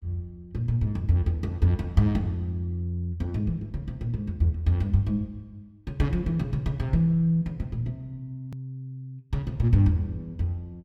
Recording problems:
hard cut with a click; at 8.5 s

